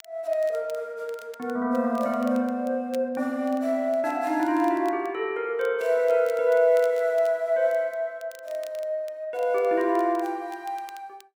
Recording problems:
crackling; vinyl, SNR 27 dB

